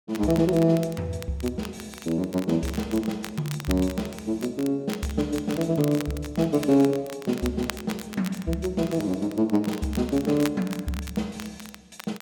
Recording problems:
crackle; vinyl, SNR 15 dB

